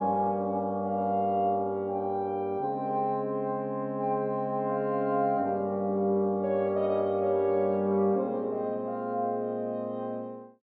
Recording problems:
none

